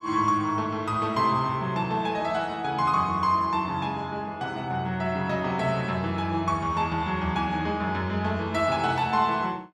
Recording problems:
none

